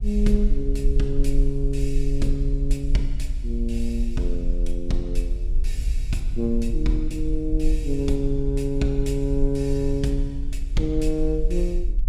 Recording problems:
low-frequency rumble; below 42 Hz, SNR 1 dB
wind on the microphone; below 88 Hz, SNR 11 dB

